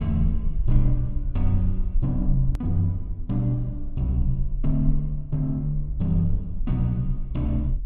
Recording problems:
rumble; below 46 Hz, strongest tone 22 Hz, SNR 5 dB
edit click; at 2.5 s

